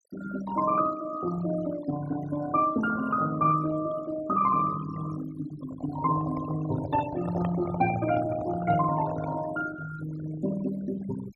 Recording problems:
noise reduction artefacts; signal-to-artefact ratio 14 dB
microphone handling noise; from 5.5 to 9.5 s; peak -3 dB vs average level

